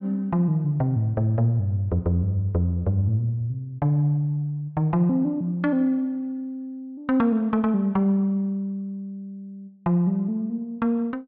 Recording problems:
none

